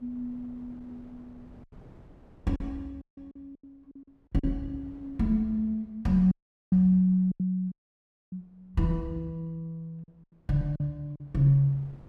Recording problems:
wind noise; below 310 Hz, SNR 27 dB
lost packets; 5% of the sound replaced, filled with silence
audio cutting out; at 3 s, at 6.5 s and at 7.5 s for 0.5 s

